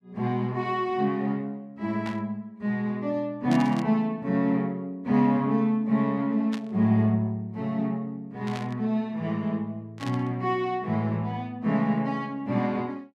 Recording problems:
burst of static; 5 times, first at 2 s; peak -7 dB vs average level

